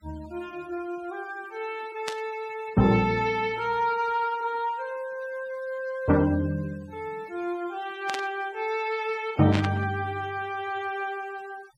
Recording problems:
noise reduction artefacts; signal-to-artefact ratio 22 dB
burst of static; at 2 s, at 8 s and at 9.5 s; peak +1 dB vs average level

